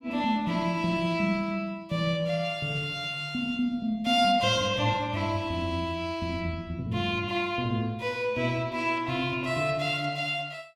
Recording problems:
none

